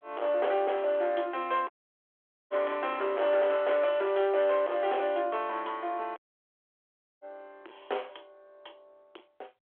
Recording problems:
phone line; 320 Hz to 3.4 kHz, G.726
distorted audio; soft clipping, signal-to-distortion ratio 11 dB
audio cutting out; at 1.5 s for 1 s and at 6 s for 1 s

